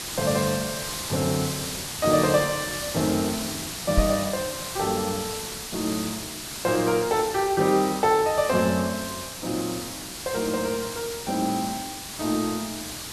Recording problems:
hiss; slope 0 dB per octave, SNR 6 dB
microphone thump; at 4 s; peak +6 dB vs average level

